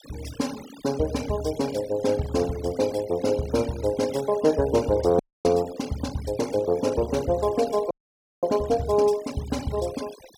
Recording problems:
noise reduction artefacts; signal-to-artefact ratio 18 dB
audio freezing; at 5 s and at 8 s for 0.5 s

